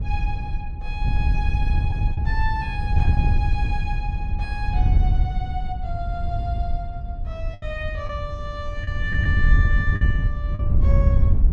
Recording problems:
wind on the microphone; below 86 Hz, SNR -8 dB
lost packets; 2% of the sound replaced, filled with the last packet

